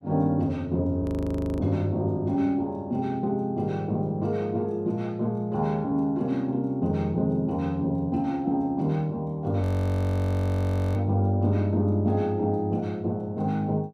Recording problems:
frozen audio; at 1 s for 0.5 s and at 9.5 s for 1.5 s

